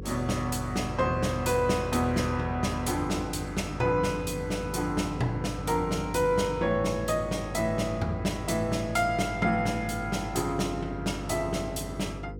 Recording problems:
electrical hum; 50 Hz, harmonics up to 500 Hz, SNR 11 dB

